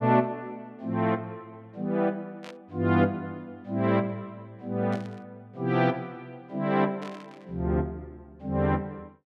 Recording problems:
static burst; at 2.5 s, at 5 s and at 7 s; peak -12 dB vs average level

